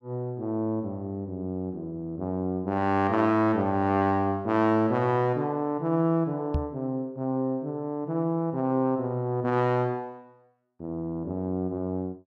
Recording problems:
knock on the microphone; at 6.5 s; peak +3 dB vs average level

